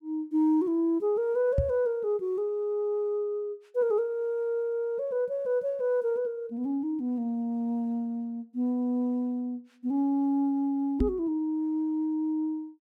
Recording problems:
microphone bump; at 1.5 s and at 11 s; peak +6 dB vs average level

